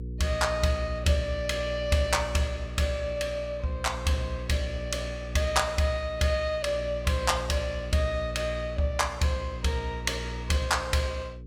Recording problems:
hum; 60 Hz, harmonics up to 480 Hz, SNR 9 dB

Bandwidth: 17 kHz